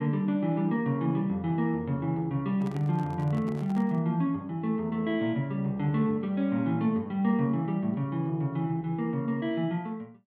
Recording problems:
microphone handling noise; from 2.5 to 4 s; peak -11 dB vs average level

